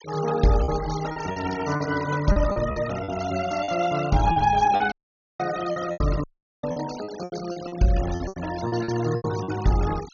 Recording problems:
low-pass filter; nothing above 6.8 kHz
denoising artefacts; signal-to-artefact ratio 15 dB
lost packets; 12% of the sound replaced, filled with repeated pitch periods
audio cutting out; at 5 s and at 6 s

